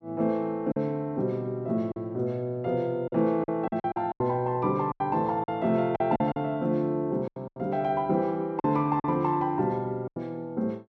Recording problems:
lost packets; 9% of the sound replaced, filled with silence

